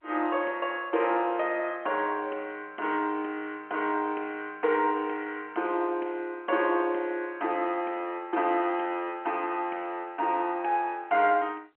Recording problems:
phone line; 260 Hz to 3.2 kHz, G.711

